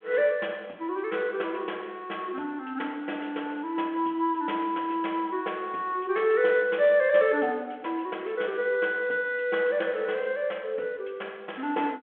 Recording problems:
phone line; 300 Hz to 3.4 kHz, G.726

